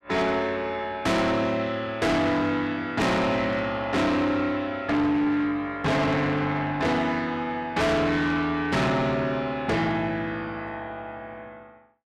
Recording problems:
distorted audio; soft clipping, signal-to-distortion ratio 6 dB

